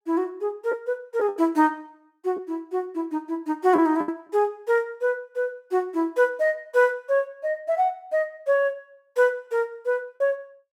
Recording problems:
packet loss; 2% of the sound replaced, filled with the last packet

